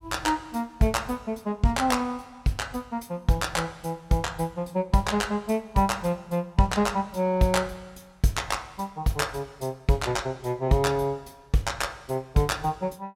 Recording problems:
none

